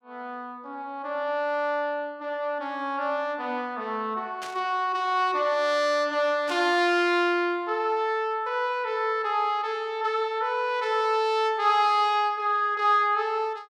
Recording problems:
static burst; at 4.5 s and at 6.5 s; peak -9 dB vs average level

